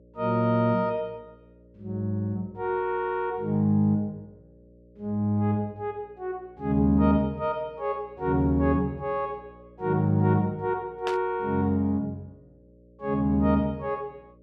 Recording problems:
electrical hum; 60 Hz, harmonics up to 600 Hz, SNR 28 dB
static burst; at 11 s; peak -4 dB vs average level

